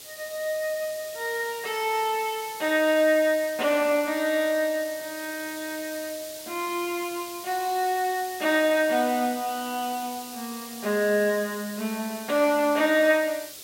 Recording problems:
background hiss; SNR 13 dB

